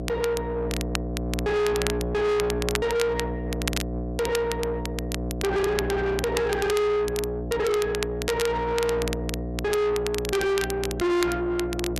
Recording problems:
distortion; soft clipping, signal-to-distortion ratio 6 dB
hum; 60 Hz, harmonics up to 900 Hz, SNR 6 dB
crackle; vinyl, SNR 9 dB

